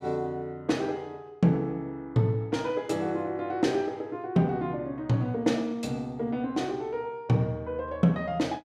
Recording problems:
none

